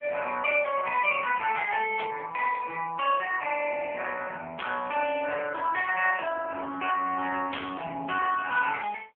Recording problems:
telephone audio; 320 Hz to 3.3 kHz, AMR-NB
burst of static; at 2 s, at 4.5 s and at 7.5 s; peak -2 dB vs average level

